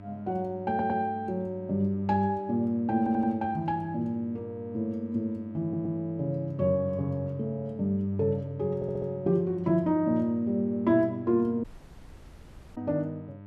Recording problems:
hum; 50 Hz, harmonics up to 1.6 kHz, SNR 17 dB
stutter; 4 times, first at 0.5 s
dropout; at 12 s for 1 s

